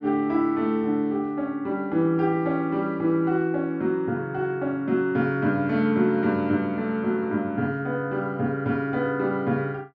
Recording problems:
none

